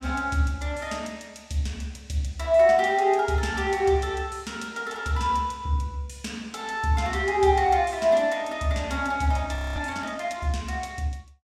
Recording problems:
audio freezing; at 9.5 s

